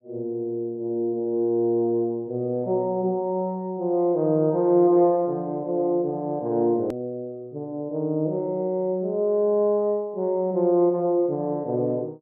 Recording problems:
hard cut with a click; at 7 s

